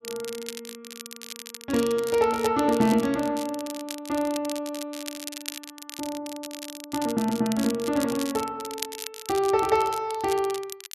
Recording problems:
crackling; vinyl, SNR 12 dB

